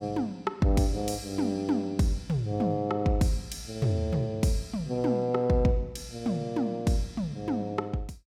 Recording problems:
none

